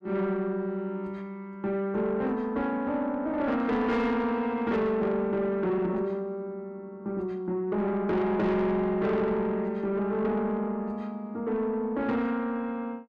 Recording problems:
distortion; soft clipping, signal-to-distortion ratio 10 dB

